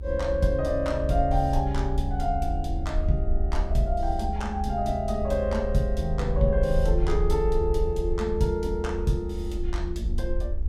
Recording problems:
electrical hum; 60 Hz, harmonics up to 960 Hz, SNR 21 dB
low-frequency rumble; below 72 Hz, SNR 3 dB

